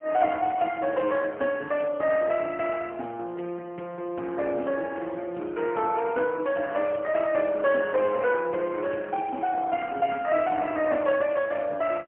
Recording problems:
telephone audio; 260 Hz to 3.1 kHz, AMR-NB, then MP3

